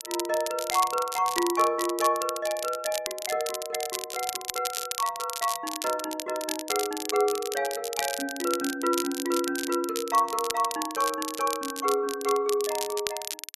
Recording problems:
crackling; vinyl, SNR 6 dB

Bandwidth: 13 kHz